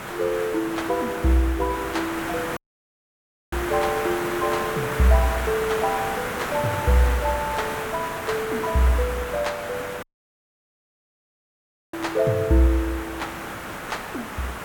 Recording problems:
hiss; SNR 6 dB
audio cutting out; at 2.5 s for 1 s and at 10 s for 2 s

